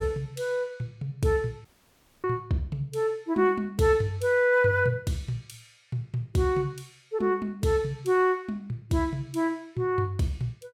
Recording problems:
audio cutting out; at 1.5 s for 0.5 s

